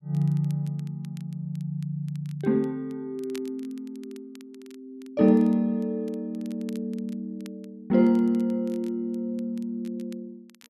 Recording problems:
crackling; vinyl, SNR 29 dB

